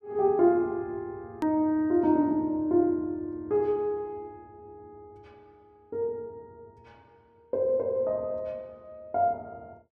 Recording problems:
edit click; at 1.5 s

